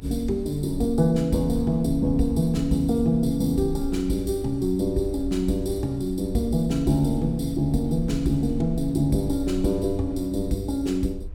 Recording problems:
rumble; below 70 Hz, strongest tone 20 Hz, SNR 13 dB

